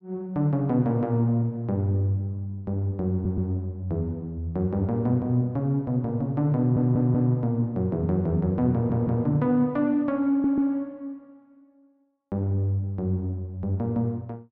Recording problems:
audio stuttering; 4 times, first at 3 s

